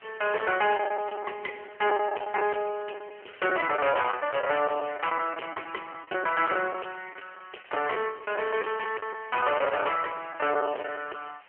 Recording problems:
telephone audio; 340 Hz to 3 kHz, AMR-NB
distortion; hard clipping, uneven, signal-to-distortion ratio 8 dB
hiss; SNR 27 dB
packet loss; 9% of the sound replaced, filled with the last packet

